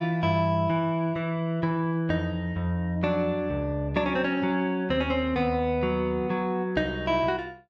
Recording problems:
none

